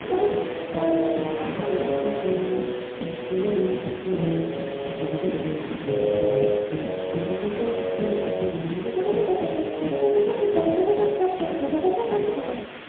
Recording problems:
telephone audio; 150 Hz to 3.6 kHz, AMR-NB, then MP3
background hiss; SNR 18 dB
wind on the microphone; below 1.1 kHz, SNR 14 dB

